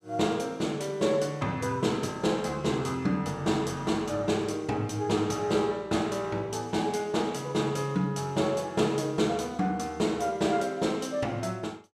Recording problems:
none

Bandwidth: 15.5 kHz